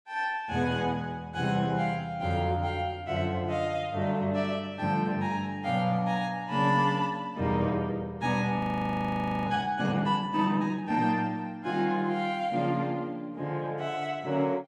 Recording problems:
frozen audio; at 8.5 s for 1 s

